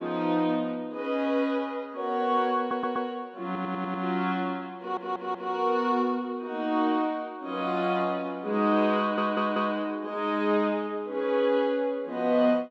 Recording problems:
stutter; 4 times, first at 2.5 s

